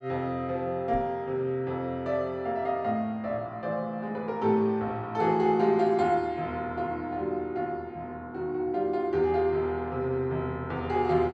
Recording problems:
knock on the microphone; at 1 s; peak -3 dB vs average level

